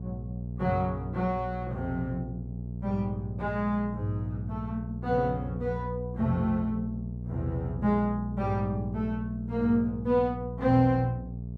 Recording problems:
electrical hum; 60 Hz, harmonics up to 480 Hz, SNR 7 dB

